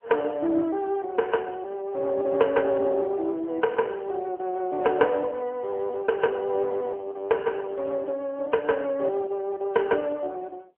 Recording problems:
phone line; 280 Hz to 2.9 kHz, AMR-NB

